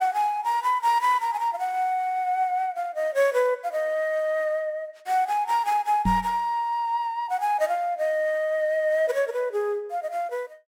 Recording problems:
microphone bump; at 6 s; peak +3 dB vs average level

